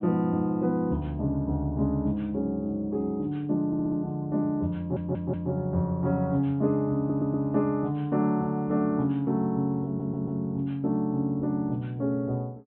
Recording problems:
treble missing; nothing above 4 kHz
stutter; 4 times, first at 3.5 s

